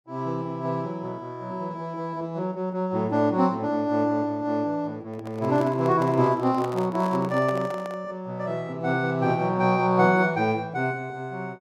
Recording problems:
handling noise; from 5 to 8 s; peak -6 dB vs average level

